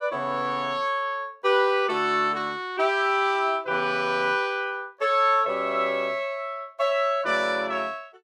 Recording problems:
none

